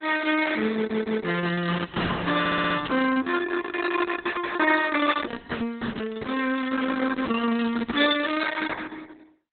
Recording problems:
lossy compression; Opus, log-spectral distance 5 dB, nothing above 3.8 kHz
stutter; at 1 s and at 2.5 s

